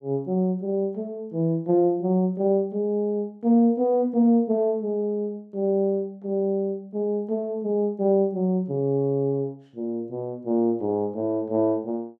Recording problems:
none

